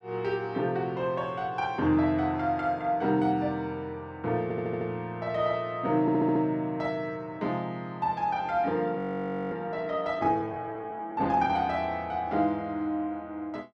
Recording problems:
audio stuttering; at 4.5 s and at 6 s
frozen audio; at 9 s for 0.5 s

